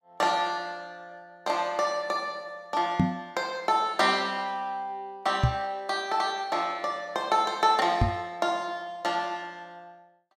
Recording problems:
microphone bump; at 3 s, at 5.5 s and at 8 s; peak +8 dB vs average level

